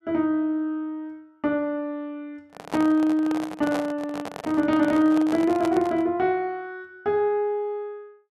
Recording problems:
handling noise; from 2.5 to 6 s; peak -3 dB vs average level

